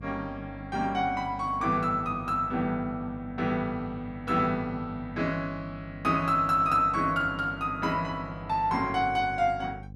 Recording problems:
hum; 50 Hz, harmonics up to 500 Hz, SNR 16 dB

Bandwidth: 13 kHz